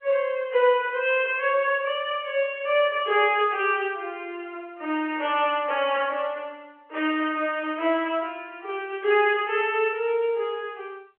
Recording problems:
phone line; 340 Hz to 3.3 kHz, G.711

